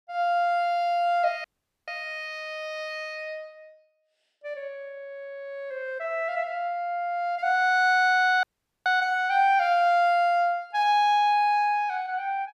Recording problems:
dropout; at 1.5 s and at 8.5 s

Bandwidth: 15 kHz